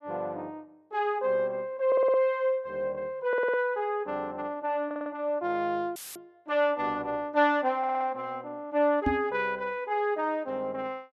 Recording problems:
audio stuttering; 4 times, first at 2 s
dropout; at 6 s; filled with static
microphone thump; at 9 s; peak +4 dB vs average level

